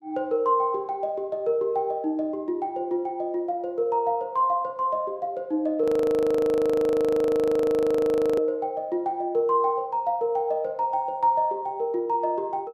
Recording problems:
frozen audio; at 6 s for 2.5 s

